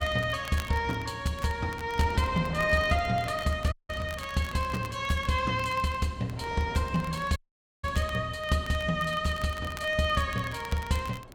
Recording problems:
wind on the microphone; below 660 Hz, SNR 18 dB
crackling; vinyl, SNR 19 dB
dropout; at 3.5 s and at 7.5 s

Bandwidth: 17 kHz